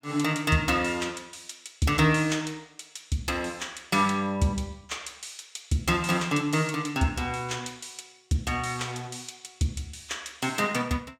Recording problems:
none

